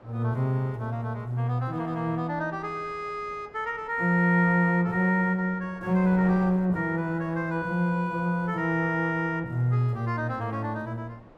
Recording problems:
wind on the microphone; below 800 Hz, SNR 23 dB

